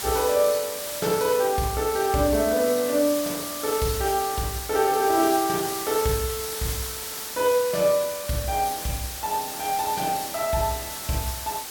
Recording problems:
background hiss; slope 0 dB per octave, SNR 7 dB

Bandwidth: 17.5 kHz